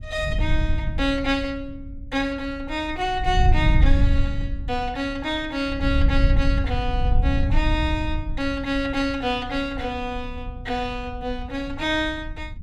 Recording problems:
wind noise; below 80 Hz, SNR 0 dB

